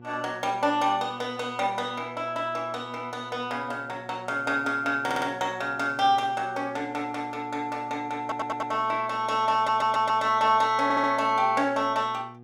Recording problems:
mains hum; 60 Hz, harmonics up to 1.2 kHz, SNR 21 dB
audio stuttering; 4 times, first at 5 s

